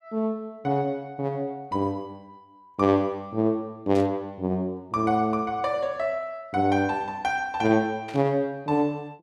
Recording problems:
burst of static; at 4 s and at 8 s; peak -12 dB vs average level

